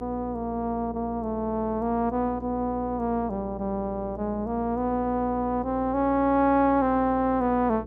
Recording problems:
electrical hum; 60 Hz, harmonics up to 480 Hz, SNR 15 dB

